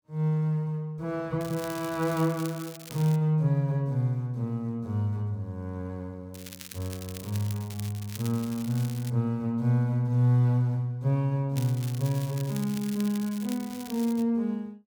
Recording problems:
crackling; from 1.5 to 3 s, from 6.5 to 9 s and from 12 to 14 s; loose cable, SNR 15 dB

